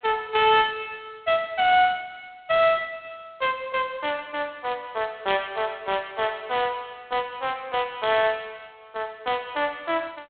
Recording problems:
telephone audio; 280 Hz to 3.5 kHz, G.726

